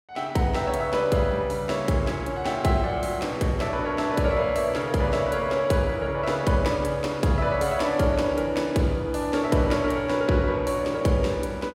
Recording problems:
none

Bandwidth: 16 kHz